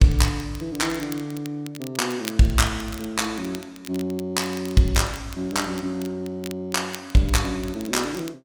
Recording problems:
crackling; vinyl, SNR 17 dB

